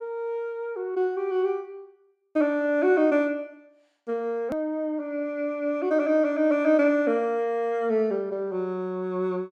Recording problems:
click at an edit; at 4.5 s

